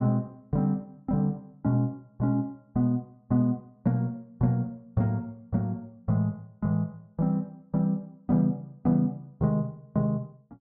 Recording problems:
none

